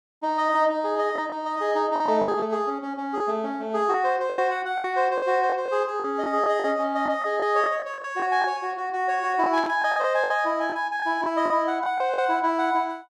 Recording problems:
packet loss; 9% of the sound replaced, filled with the last packet
burst of static; at 9.5 s; peak -11 dB vs average level

